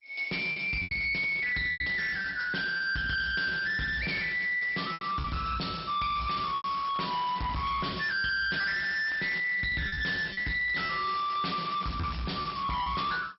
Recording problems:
lossy codec; MP2, log-spectral distance 5 dB, nothing above 5.3 kHz
distorted audio; hard clipping, signal-to-distortion ratio 6 dB
packet loss; 6% of the sound replaced, filled with repeated pitch periods
crackling; from 7 to 9.5 s and from 11 to 13 s; loose cable, SNR 18 dB

